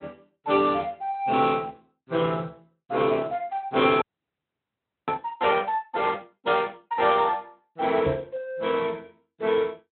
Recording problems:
treble missing; nothing above 3.6 kHz
codec artefacts; Speex, log-spectral distance 3 dB
audio freezing; at 4 s for 1 s
microphone bump; at 8 s; peak -1 dB vs average level

